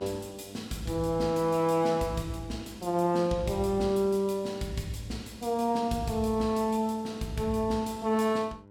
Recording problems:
hum; 50 Hz, harmonics up to 1.5 kHz, SNR 23 dB

